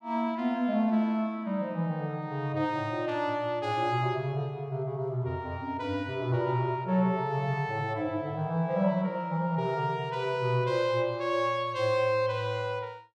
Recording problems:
none

